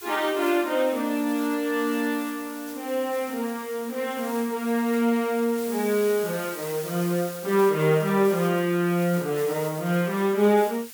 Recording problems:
background hiss; slope +3 dB per octave, SNR 14 dB

